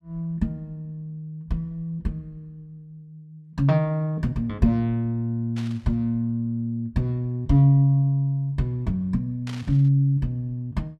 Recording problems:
static burst; at 5.5 s and at 9.5 s; peak -12 dB vs average level

